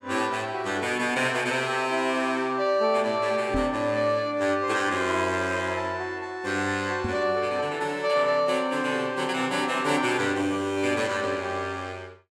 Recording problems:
knock on the microphone; at 3.5 s and at 7 s; peak -2 dB vs average level

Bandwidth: 17.5 kHz